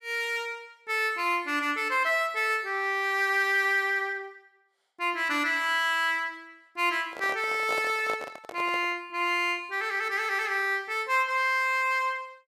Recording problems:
microphone handling noise; from 7 to 9 s; peak -6 dB vs average level

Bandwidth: 14.5 kHz